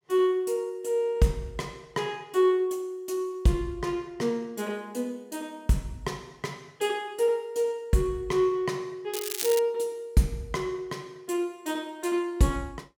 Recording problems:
crackling; at 9 s; loose cable, SNR 4 dB

